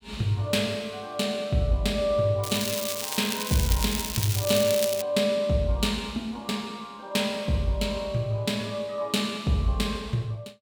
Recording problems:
crackle; from 2.5 to 5 s; loose cable, SNR 4 dB

